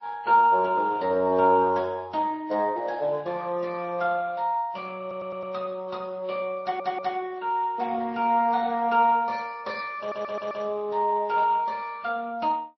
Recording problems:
lossy codec; Speex, then MP3, log-spectral distance 2 dB, nothing above 5.2 kHz
audio stuttering; at 5 s, at 6.5 s and at 10 s

